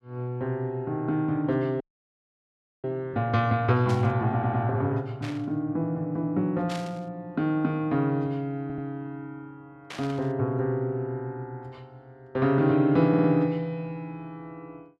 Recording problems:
frozen audio; at 2 s for 1 s
burst of static; 4 times, first at 4 s; peak -7 dB vs average level
stutter; at 4.5 s, at 8.5 s and at 13 s

